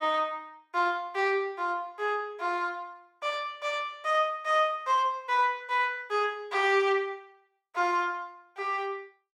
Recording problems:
none

